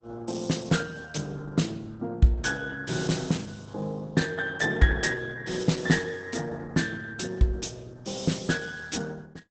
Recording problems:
lossy compression; Opus, log-spectral distance 5 dB, nothing above 8 kHz

